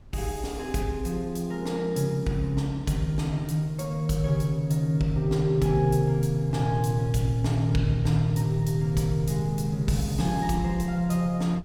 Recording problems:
wind on the microphone; below 120 Hz, SNR 20 dB

